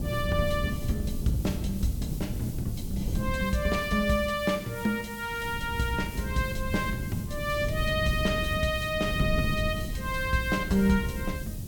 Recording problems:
background hiss; slope +5 dB per octave, SNR 16 dB
wind on the microphone; below 170 Hz, SNR 5 dB

